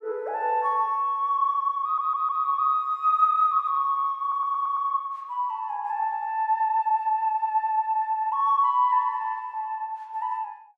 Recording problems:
audio stuttering; at 2 s and at 4 s

